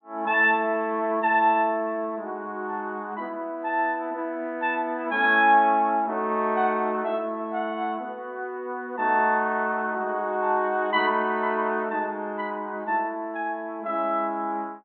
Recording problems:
low-pass filter; nothing above 4 kHz

